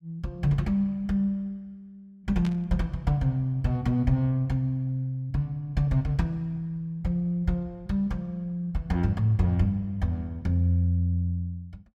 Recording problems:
static burst; at 2.5 s; peak -9 dB vs average level

